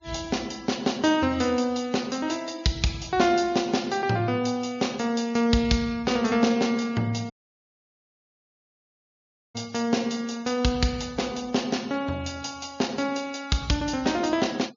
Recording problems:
low-pass filter; nothing above 7.1 kHz
denoising artefacts; signal-to-artefact ratio 23 dB
audio cutting out; at 7.5 s for 2 s

